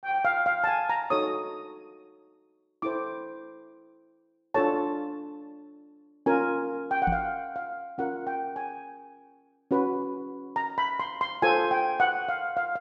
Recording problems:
knock on the microphone; at 7 s; peak +1 dB vs average level

